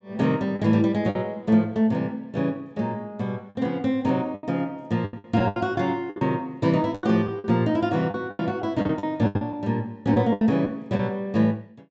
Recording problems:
treble missing; nothing above 8 kHz
lost packets; 10% of the sound replaced, filled with the last packet

